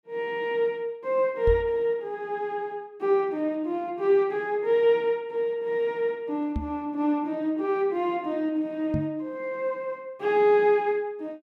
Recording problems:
microphone bump; at 1.5 s, at 6.5 s and at 9 s; peak +2 dB vs average level

